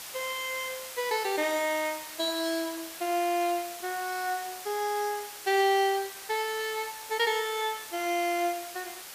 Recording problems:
hiss; slope +1 dB per octave, SNR 10 dB

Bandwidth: 15 kHz